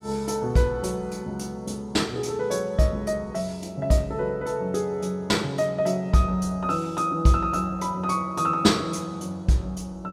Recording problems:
none

